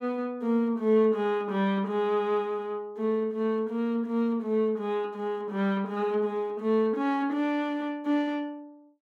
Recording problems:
none

